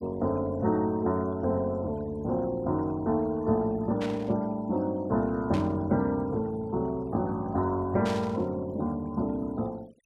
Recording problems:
noise reduction artefacts; signal-to-artefact ratio 27 dB
burst of static; at 4 s, at 5.5 s and at 8 s; peak -7 dB vs average level

